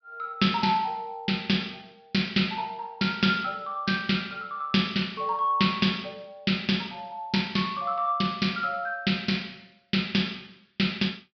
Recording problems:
treble cut off; nothing above 5.5 kHz

